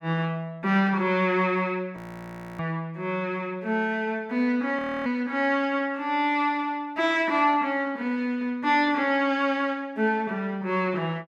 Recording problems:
audio freezing; at 2 s for 0.5 s and at 5 s

